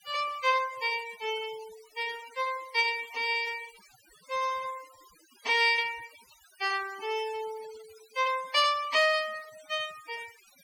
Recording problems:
noise reduction artefacts; signal-to-artefact ratio 19 dB

